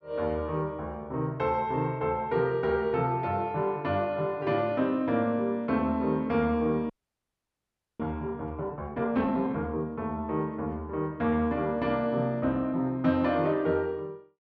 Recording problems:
audio freezing; at 7 s for 1 s

